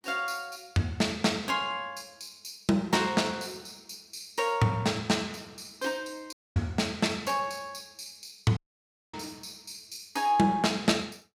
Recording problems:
audio cutting out; at 6.5 s and at 8.5 s for 0.5 s

